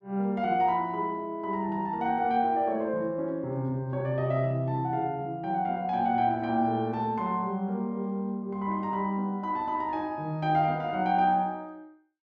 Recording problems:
none

